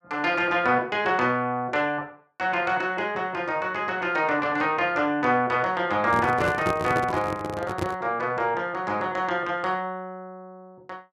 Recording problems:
microphone handling noise; from 6 to 8 s; peak +1 dB vs average level

